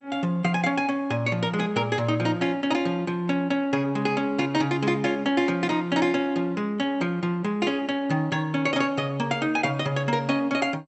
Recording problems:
lossy compression; MP2, log-spectral distance 2 dB, nothing above 8 kHz

